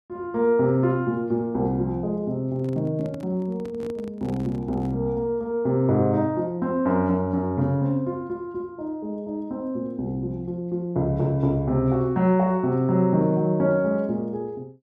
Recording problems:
handling noise; from 2.5 to 5 s; peak -10 dB vs average level

